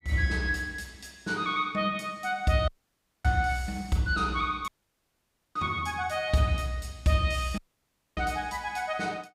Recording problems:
dropout; at 2.5 s for 0.5 s, at 4.5 s for 1 s and at 7.5 s for 0.5 s

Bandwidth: 15.5 kHz